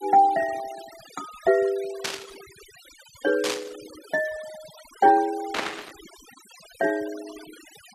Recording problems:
noise reduction artefacts; signal-to-artefact ratio 20 dB
burst of static; at 2 s, at 3.5 s and at 5.5 s; peak +1 dB vs average level

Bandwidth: 14 kHz